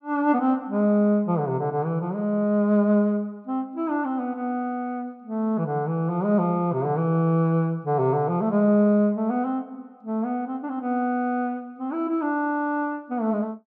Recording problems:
none

